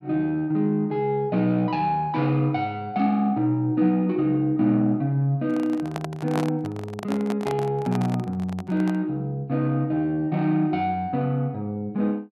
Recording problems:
microphone handling noise; from 5.5 to 9 s; peak -3 dB vs average level

